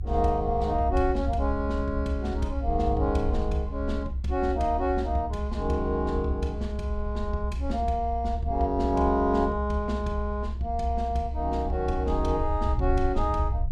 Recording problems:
low-frequency rumble; below 66 Hz, strongest tone 64 Hz, SNR 4 dB

